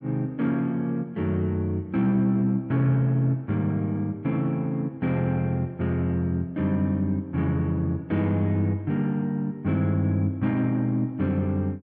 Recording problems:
none

